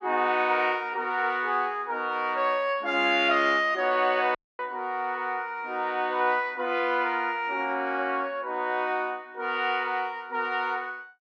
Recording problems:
dropout; at 4.5 s

